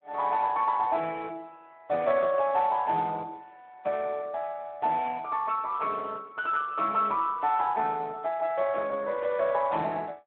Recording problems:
phone line; 300 Hz to 3.6 kHz, Speex

